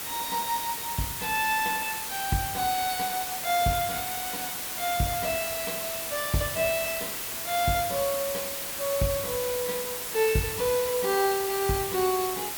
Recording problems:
hiss; slope 0 dB per octave, SNR 2 dB
crackling; from 4.5 to 5.5 s and from 6.5 to 10 s; loose cable, SNR 29 dB

